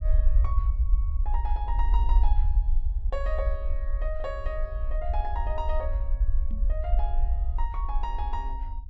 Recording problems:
low-frequency rumble; below 54 Hz, SNR -8 dB
microphone thump; at 6.5 s; peak -1 dB vs average level

